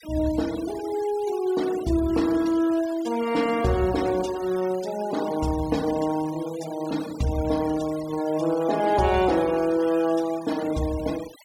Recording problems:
denoising artefacts; signal-to-artefact ratio 17 dB

